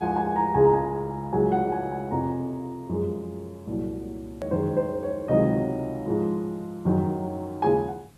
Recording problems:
background hiss; slope -4 dB per octave, SNR 29 dB
edit click; at 4.5 s

